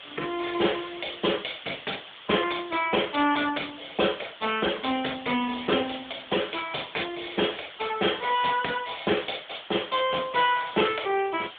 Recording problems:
phone line; 260 Hz to 3.5 kHz, AMR-NB
background hiss; SNR 15 dB

